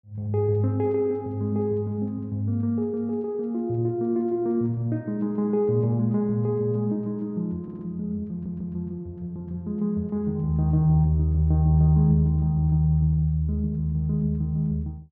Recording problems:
audio stuttering; at 7.5 s and at 8.5 s

